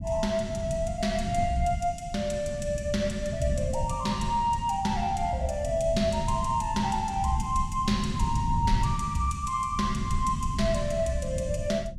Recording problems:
rumble; below 150 Hz, SNR 5 dB

